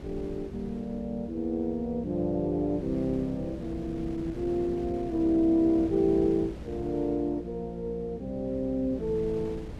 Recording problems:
hum; 60 Hz, harmonics up to 540 Hz, SNR 16 dB
wind on the microphone; below 310 Hz, SNR 15 dB

